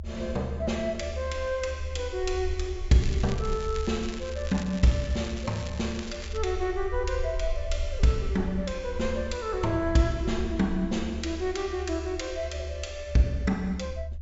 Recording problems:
treble cut off; nothing above 8 kHz
rumble; below 74 Hz, SNR 8 dB
crackle; from 3 to 6.5 s; loose cable, SNR 14 dB

